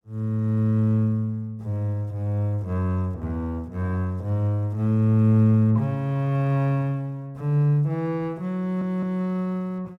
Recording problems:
stutter; at 8.5 s

